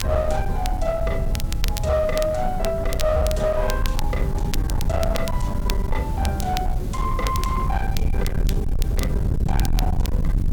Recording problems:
distorted audio; hard clipping, signal-to-distortion ratio 6 dB
hiss; slope -2 dB per octave, SNR 19 dB
rumble; below 92 Hz, SNR 0 dB
wind on the microphone; below 190 Hz, SNR 12 dB
crackling; vinyl, SNR 10 dB

